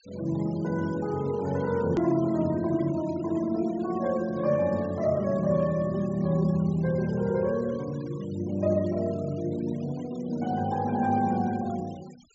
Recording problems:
treble missing; nothing above 8 kHz
denoising artefacts; signal-to-artefact ratio 23 dB
click at an edit; at 2 s

